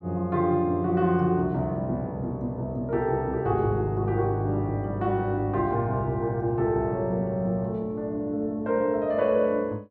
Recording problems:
none

